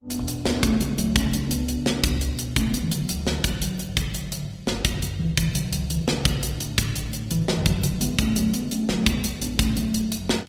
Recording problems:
lossy codec; Opus, log-spectral distance 5 dB

